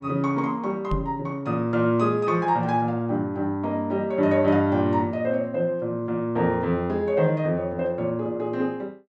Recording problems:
microphone thump; at 1 s; peak -1 dB vs average level

